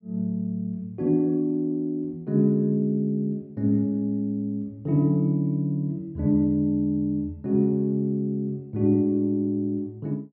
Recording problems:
none

